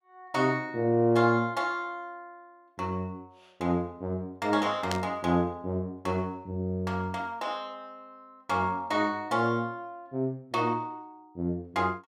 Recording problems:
static burst; at 5 s; peak +1 dB vs average level

